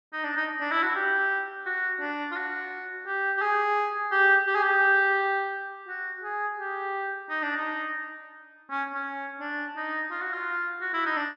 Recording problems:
none

